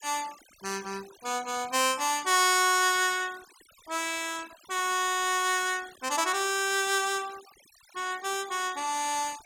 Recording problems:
noise reduction artefacts; signal-to-artefact ratio 19 dB

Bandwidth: 17 kHz